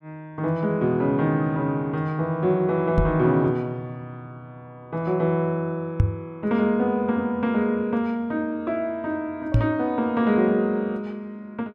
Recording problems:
knock on the microphone; at 3 s, at 6 s and at 9.5 s; peak +8 dB vs average level

